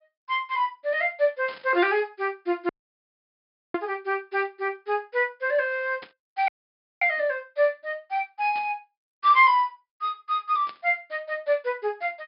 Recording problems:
low-pass filter; nothing above 5.5 kHz
burst of static; 4 times, first at 1.5 s; peak -12 dB vs average level
dropout; at 2.5 s for 1 s and at 6.5 s for 0.5 s

